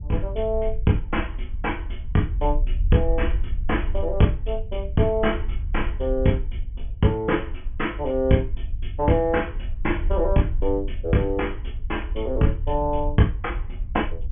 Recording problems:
treble missing; nothing above 3.4 kHz
low-frequency rumble; below 60 Hz, SNR 6 dB

